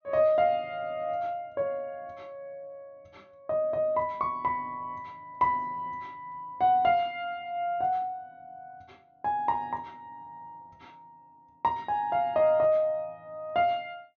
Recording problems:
low-pass filter; nothing above 6.7 kHz

